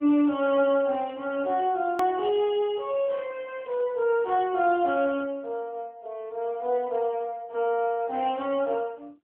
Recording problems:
telephone audio; 260 Hz to 3.7 kHz, AMR-NB
edit click; at 2 s

